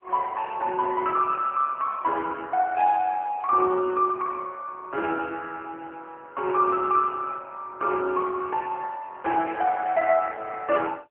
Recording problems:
phone line; 280 Hz to 3.3 kHz, AMR-NB

